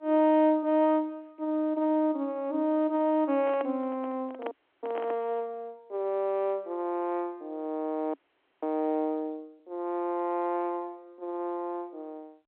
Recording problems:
phone line; 240 Hz to 3.7 kHz, G.711
handling noise; from 3.5 to 5 s; peak -4 dB vs average level
audio freezing; at 4.5 s and at 8 s

